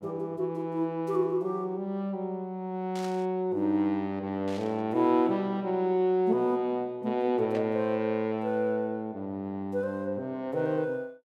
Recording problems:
static burst; at 3 s, at 4.5 s and at 7.5 s; peak -11 dB vs average level

